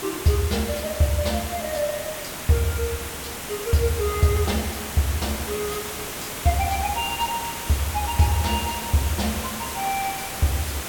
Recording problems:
background hiss; slope -3 dB per octave, SNR 5 dB

